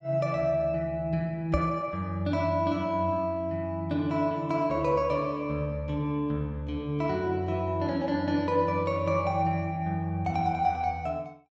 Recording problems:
knock on the microphone; at 1.5 s; peak +2 dB vs average level

